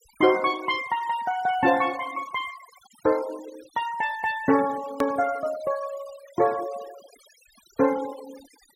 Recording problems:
noise reduction artefacts; signal-to-artefact ratio 17 dB
click at an edit; at 5 s

